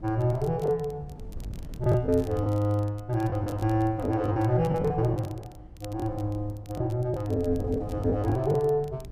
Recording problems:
wind noise; below 140 Hz, SNR 15 dB
crackle; vinyl, SNR 27 dB
lost packets; 7% of the sound replaced, filled with the last packet

